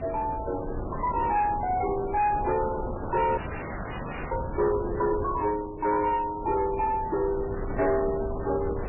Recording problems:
lossy codec; MP3, log-spectral distance 5 dB, nothing above 2.6 kHz
distorted audio; soft clipping, signal-to-distortion ratio 10 dB
wind noise; below 520 Hz, SNR 9 dB
audio freezing; at 3.5 s for 1 s

